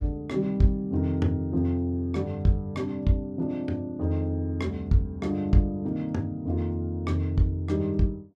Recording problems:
none

